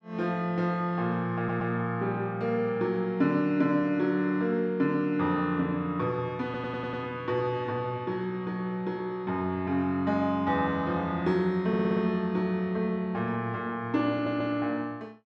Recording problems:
audio stuttering; 4 times, first at 1.5 s

